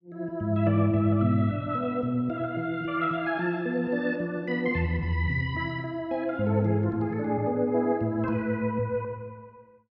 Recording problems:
none

